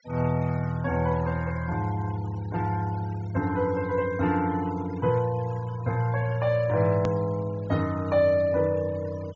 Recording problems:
treble missing; nothing above 7.3 kHz
noise reduction artefacts; signal-to-artefact ratio 20 dB
edit click; at 7 s

